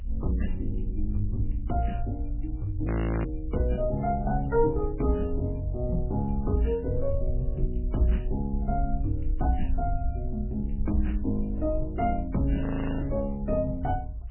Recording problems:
lossy compression; MP3, log-spectral distance 2 dB, nothing above 2.5 kHz
low-frequency rumble; below 60 Hz, SNR 4 dB
audio freezing; at 3 s and at 13 s

